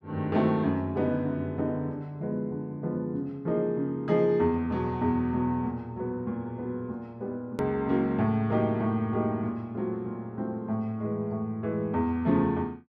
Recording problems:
hard cut with a click; at 7.5 s

